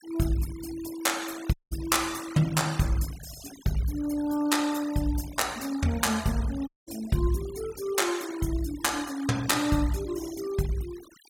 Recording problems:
noise reduction artefacts; signal-to-artefact ratio 16 dB
dropout; at 1.5 s and at 6.5 s

